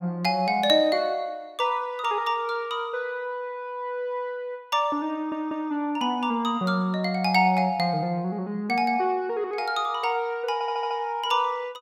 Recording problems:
audio stuttering; at 5 s and at 11 s

